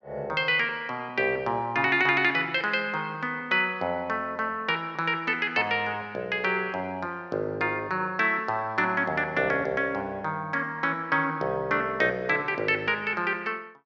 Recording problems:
none

